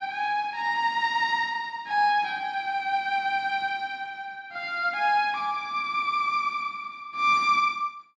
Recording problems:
none

